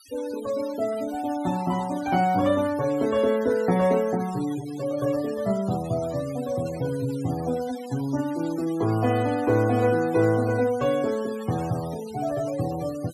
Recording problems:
denoising artefacts; signal-to-artefact ratio 18 dB

